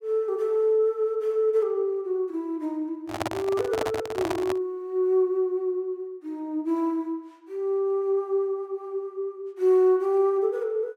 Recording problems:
microphone handling noise; from 3 to 4.5 s; peak +1 dB vs average level

